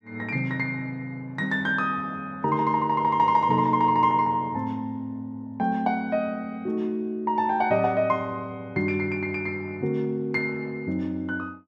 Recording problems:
none

